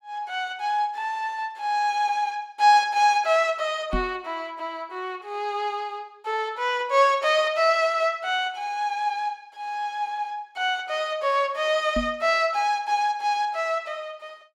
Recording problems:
microphone bump; at 4 s and at 12 s; peak -1 dB vs average level

